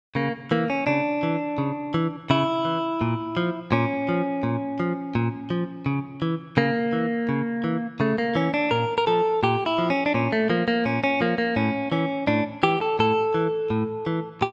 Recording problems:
none

